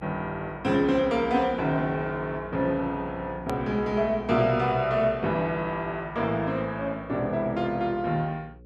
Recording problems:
electrical hum; 60 Hz, harmonics up to 540 Hz, SNR 21 dB
hard cut with a click; at 3.5 s

